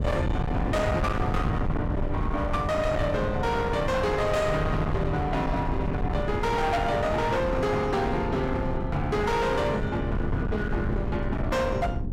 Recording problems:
distortion; hard clipping, uneven, signal-to-distortion ratio 8 dB
low-frequency rumble; below 220 Hz, SNR 4 dB

